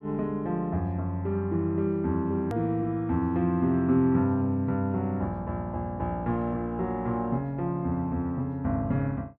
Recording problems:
hard cut with a click; at 2.5 s

